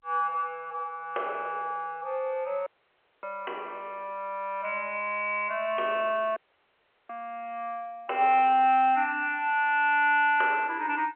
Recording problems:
phone line; 340 Hz to 3.2 kHz, G.711
dropout; at 2.5 s for 0.5 s and at 6.5 s for 0.5 s

